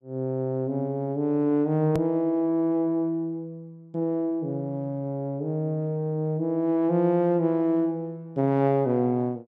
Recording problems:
edit click; at 2 s

